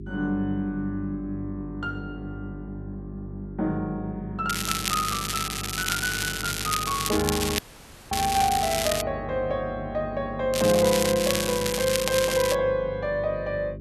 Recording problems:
hum; 50 Hz, harmonics up to 400 Hz, SNR 12 dB
crackling; from 4.5 to 9 s and from 11 to 13 s; loose cable, SNR 2 dB
dropout; at 7.5 s for 0.5 s

